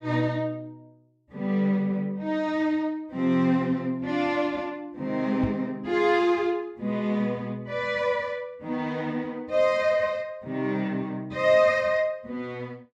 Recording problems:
microphone thump; at 5.5 s; peak -1 dB vs average level

